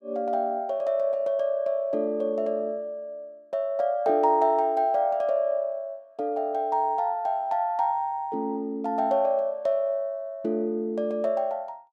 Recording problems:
none

